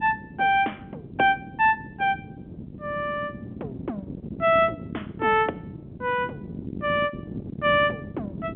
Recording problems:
phone line; 240 Hz to 3.4 kHz, G.711
wind on the microphone; below 300 Hz, SNR 14 dB

